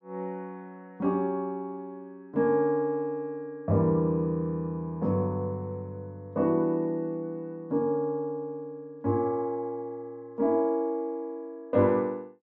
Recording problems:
treble missing; nothing above 8 kHz

